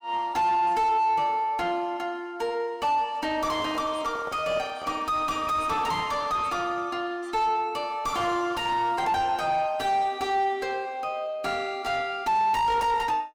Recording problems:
distortion; soft clipping, signal-to-distortion ratio 6 dB
handling noise; from 3.5 to 5 s; peak -8 dB vs average level

